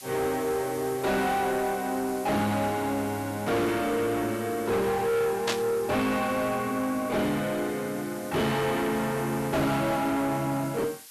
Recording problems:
distorted audio; soft clipping, signal-to-distortion ratio 6 dB
hiss; slope +3 dB per octave, SNR 16 dB
burst of static; at 5.5 s; peak +3 dB vs average level

